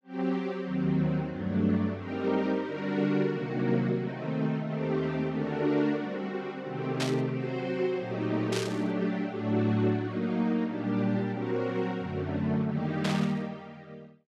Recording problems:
burst of static; at 7 s, at 8.5 s and at 13 s; peak +1 dB vs average level

